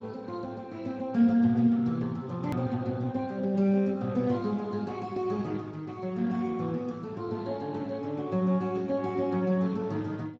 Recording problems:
lossy codec; Speex, log-spectral distance 3 dB, nothing above 17.7 kHz
click at an edit; at 2.5 s

